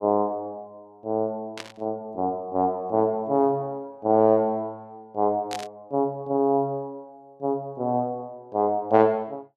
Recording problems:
burst of static; at 1.5 s and at 5.5 s; peak -5 dB vs average level

